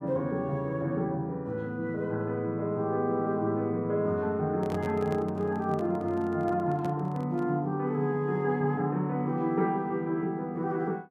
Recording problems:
microphone handling noise; from 4.5 to 7.5 s; peak -6 dB vs average level

